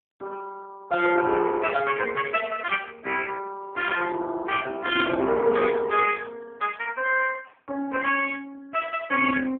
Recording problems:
telephone audio; 280 Hz to 3.3 kHz, AMR-NB

